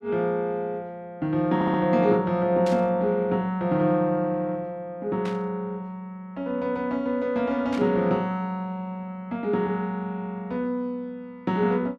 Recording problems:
audio stuttering; at 1.5 s
static burst; at 2.5 s, at 5.5 s and at 7.5 s; peak -8 dB vs average level

